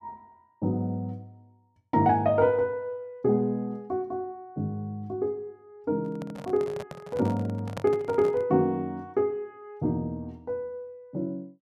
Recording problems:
handling noise; from 6 to 8.5 s; peak -3 dB vs average level

